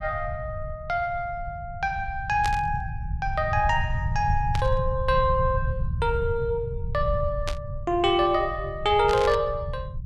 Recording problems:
rumble; below 120 Hz, SNR 7 dB
static burst; 4 times, first at 2.5 s; peak -3 dB vs average level

